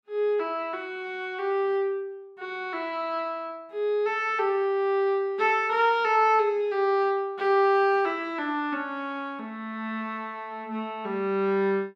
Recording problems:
none

